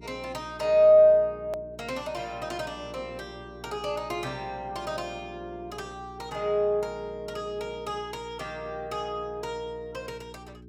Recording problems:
electrical hum; 60 Hz, harmonics up to 420 Hz, SNR 20 dB
hard cut with a click; at 1.5 s

